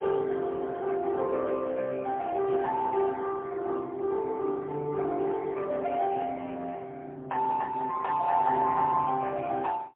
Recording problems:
phone line; 190 Hz to 2.6 kHz, AMR-NB, then MP3

